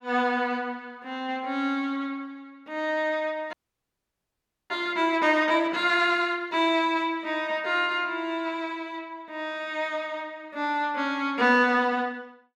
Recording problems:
frozen audio; at 3.5 s for 1 s

